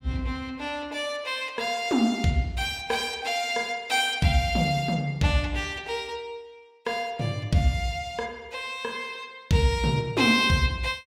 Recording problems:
none

